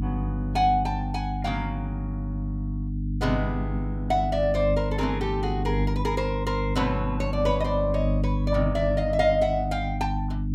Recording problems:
hum; 50 Hz, harmonics up to 300 Hz, SNR 2 dB

